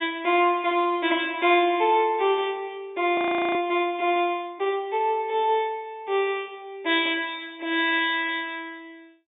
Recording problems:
treble missing; nothing above 4 kHz
audio freezing; at 3 s

